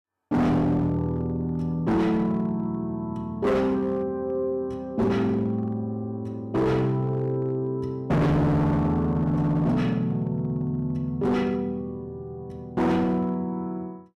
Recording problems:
distorted audio; hard clipping, signal-to-distortion ratio 6 dB

